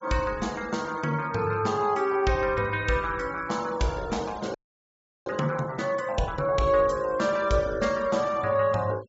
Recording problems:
low-pass filter; nothing above 7.5 kHz
denoising artefacts; signal-to-artefact ratio 22 dB
audio freezing; at 4.5 s for 0.5 s

